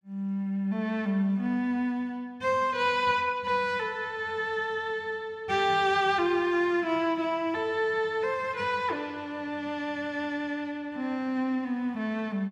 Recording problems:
none

